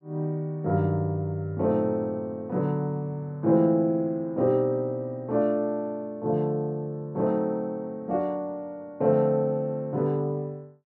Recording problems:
none

